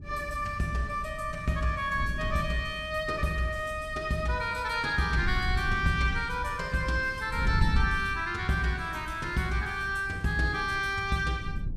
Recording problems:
wind noise; below 98 Hz, SNR 9 dB

